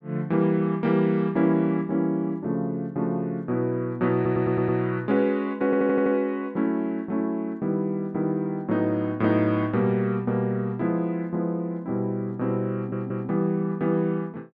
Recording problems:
audio stuttering; at 4 s, at 5.5 s and at 13 s

